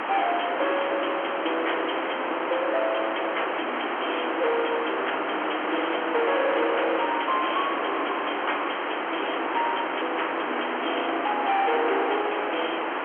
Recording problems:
phone line; 280 Hz to 3.3 kHz, G.711
distortion; soft clipping, signal-to-distortion ratio 8 dB
hiss; SNR 0 dB

